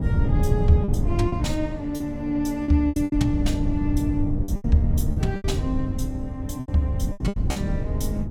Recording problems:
low-frequency rumble; below 120 Hz, SNR 1 dB
wind on the microphone; below 470 Hz, SNR 24 dB
lost packets; 10% of the sound replaced, filled with repeated pitch periods

